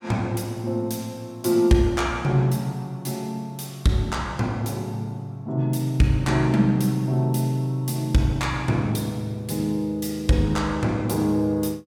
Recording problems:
none

